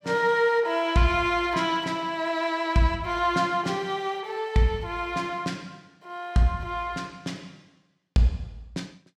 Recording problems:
none

